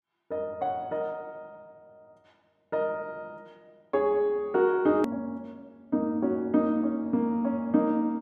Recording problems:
hard cut with a click; at 5 s

